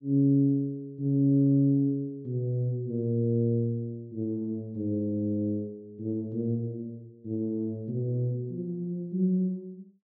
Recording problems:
treble missing; nothing above 6.8 kHz

